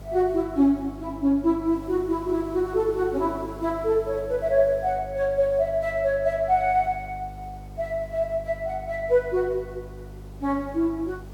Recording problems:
hum; 50 Hz, harmonics up to 500 Hz, SNR 17 dB
background hiss; SNR 27 dB

